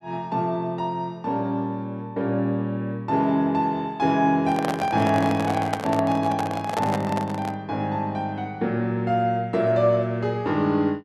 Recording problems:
microphone handling noise; from 4.5 to 7.5 s; peak +1 dB vs average level

